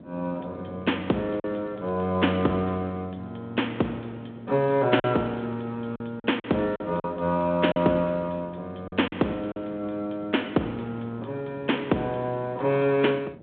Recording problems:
telephone audio; 190 Hz to 3.5 kHz, G.726
wind noise; below 420 Hz, SNR 19 dB
lost packets; 3% of the sound replaced, filled with silence

